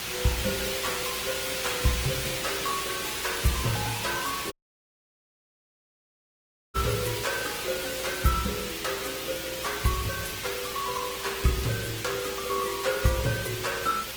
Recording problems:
codec artefacts; Opus, log-spectral distance 8 dB
hum; 60 Hz, harmonics up to 420 Hz, SNR 21 dB
hiss; SNR 1 dB
audio cutting out; at 4.5 s for 2 s

